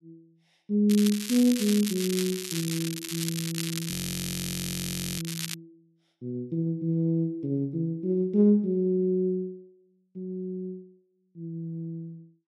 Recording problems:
crackling; from 1 to 5.5 s; loose cable, SNR 6 dB
frozen audio; at 4 s for 1.5 s

